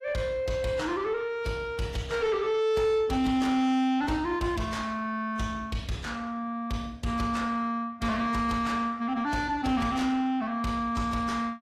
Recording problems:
codec artefacts; AAC, log-spectral distance 2 dB, nothing above 16.6 kHz
distortion; soft clipping, signal-to-distortion ratio 10 dB

